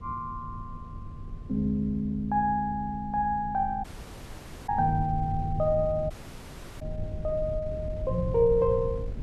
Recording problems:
wind noise; below 100 Hz, SNR 11 dB
dropout; at 4 s for 1 s and at 6 s for 0.5 s

